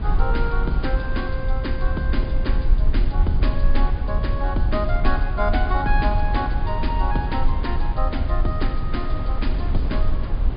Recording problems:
treble missing; nothing above 5 kHz
hiss; SNR 12 dB
low-frequency rumble; below 56 Hz, SNR -3 dB

